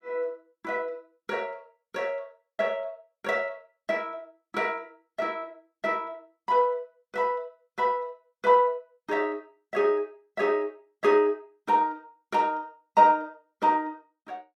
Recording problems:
none

